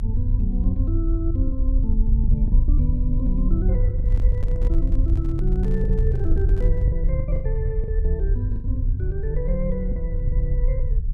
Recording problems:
low-frequency rumble; below 52 Hz, strongest tone 34 Hz, SNR -4 dB
lost packets; 7% of the sound replaced, filled with the last packet
microphone handling noise; from 4 to 7 s; peak -6 dB vs average level

